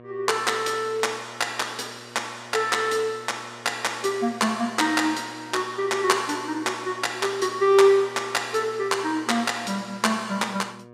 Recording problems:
electrical hum; 60 Hz, harmonics up to 1.8 kHz, SNR 22 dB

